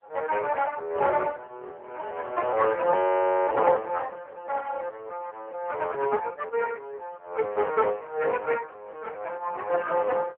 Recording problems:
phone line; 370 Hz to 3.1 kHz, AMR-NB
audio freezing; at 3 s for 0.5 s

